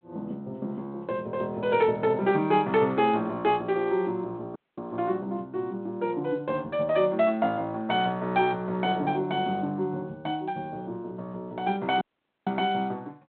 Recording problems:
phone line; 150 Hz to 3.8 kHz, G.726
audio cutting out; at 4.5 s and at 12 s

